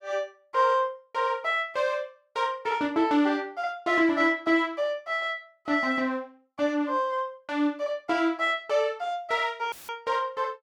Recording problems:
audio cutting out; at 9.5 s; filled with static

